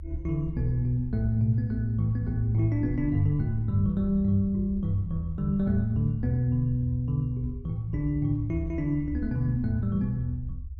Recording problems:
rumble; below 78 Hz, SNR 12 dB

